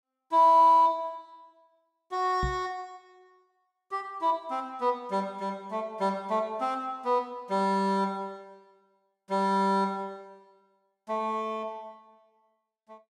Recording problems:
microphone bump; at 2.5 s; peak -1 dB vs average level

